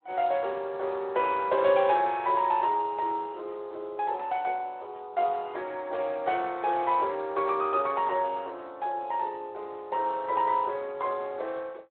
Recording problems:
phone line; 340 Hz to 3.8 kHz, Speex

